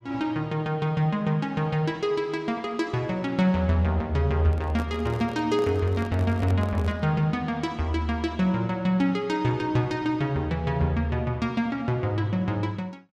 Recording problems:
microphone handling noise; from 4.5 to 7 s; peak -5 dB vs average level

